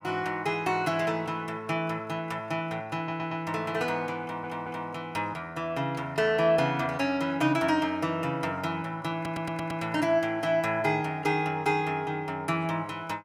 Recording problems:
stutter; at 3 s, at 4 s and at 9 s

